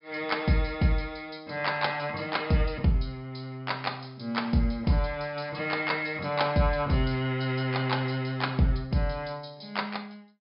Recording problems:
low-pass filter; nothing above 5.5 kHz

